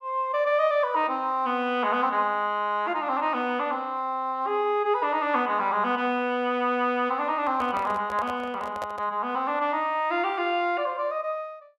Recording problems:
microphone handling noise; from 7.5 to 9 s; peak -5 dB vs average level

